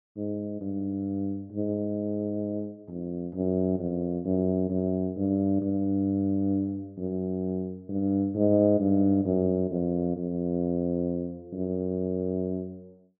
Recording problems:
treble cut off; nothing above 7.9 kHz

